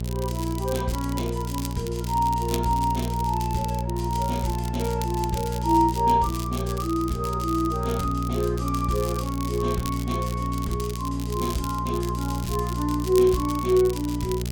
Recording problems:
hum; 60 Hz, harmonics up to 660 Hz, SNR 4 dB
crackling; vinyl, SNR 13 dB

